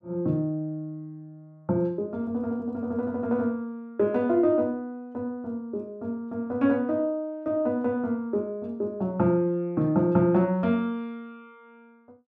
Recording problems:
none

